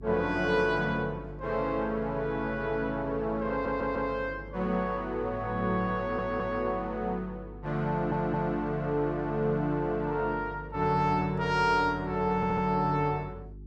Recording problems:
hum; 50 Hz, harmonics up to 400 Hz, SNR 16 dB
audio stuttering; 4 times, first at 3.5 s

